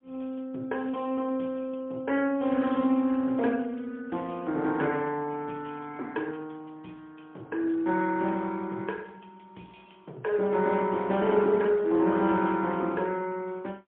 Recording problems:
phone line; 190 Hz to 3.4 kHz, AMR-NB, then MP3

